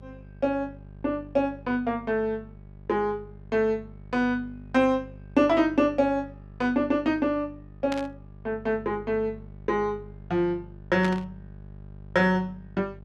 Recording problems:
hum; 50 Hz, harmonics up to 650 Hz, SNR 19 dB
static burst; at 8 s and at 11 s; peak -3 dB vs average level

